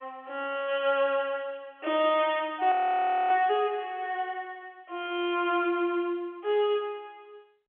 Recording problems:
telephone audio; 280 Hz to 3.4 kHz, G.711
audio freezing; at 2.5 s for 0.5 s

